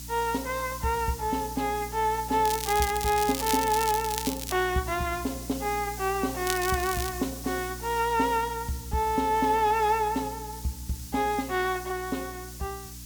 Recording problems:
hum; 60 Hz, harmonics up to 300 Hz, SNR 15 dB
hiss; SNR 13 dB
crackling; from 2.5 to 4.5 s and at 6.5 s; loose cable, SNR 6 dB

